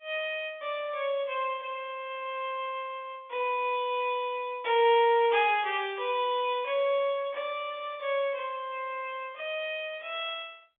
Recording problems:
telephone audio; 300 Hz to 3.5 kHz, G.711

